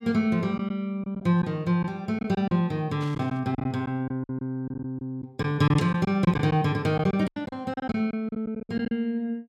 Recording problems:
packet loss; 10% of the sound replaced, filled with silence
static burst; at 3 s; peak -14 dB vs average level

